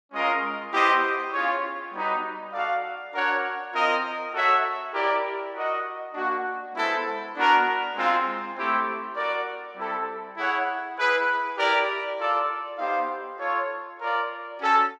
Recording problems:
none

